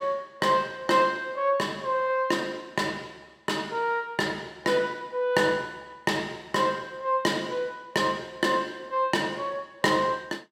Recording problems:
none

